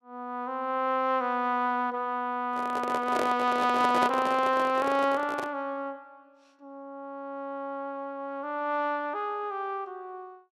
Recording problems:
microphone handling noise; from 2.5 to 5.5 s; peak +2 dB vs average level

